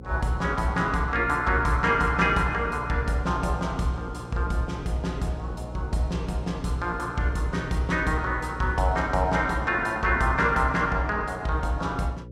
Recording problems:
mains hum; 60 Hz, harmonics up to 540 Hz, SNR 15 dB

